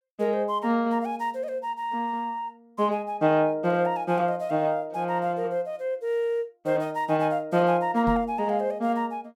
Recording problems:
microphone thump; at 8 s; peak -3 dB vs average level

